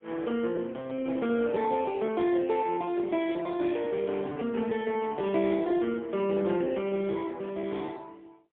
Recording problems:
telephone audio; 220 Hz to 3.5 kHz, AMR-NB, then MP3
packet loss; 9% of the sound replaced, filled with repeated pitch periods

